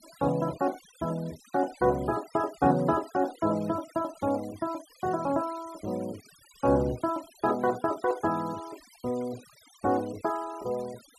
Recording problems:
denoising artefacts; signal-to-artefact ratio 21 dB

